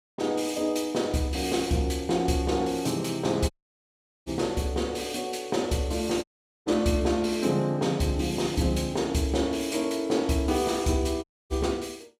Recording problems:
audio cutting out; at 3.5 s for 1 s, at 6 s and at 11 s

